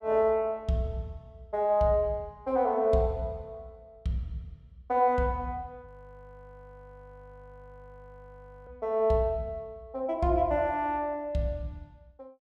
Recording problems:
frozen audio; at 6 s for 3 s

